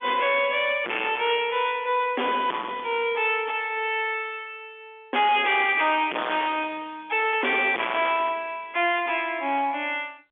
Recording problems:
phone line; 280 Hz to 3.4 kHz, G.711
distorted audio; hard clipping, signal-to-distortion ratio 5 dB

